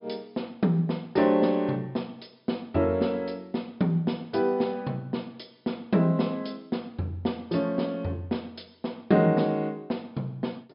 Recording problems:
treble cut off; nothing above 5.5 kHz

